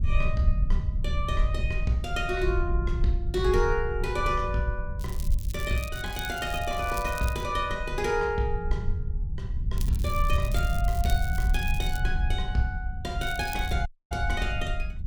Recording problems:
wind on the microphone; below 70 Hz, SNR 1 dB
crackle; from 5 to 7.5 s, from 10 to 12 s and at 13 s; loose cable, SNR 13 dB
dropout; at 14 s

